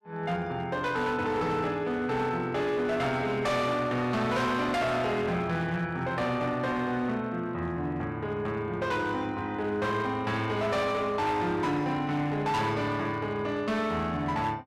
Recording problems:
distortion; hard clipping, signal-to-distortion ratio 10 dB

